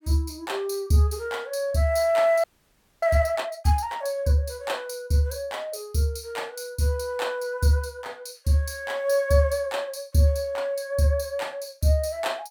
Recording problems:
frozen audio; at 2.5 s for 0.5 s

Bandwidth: 18.5 kHz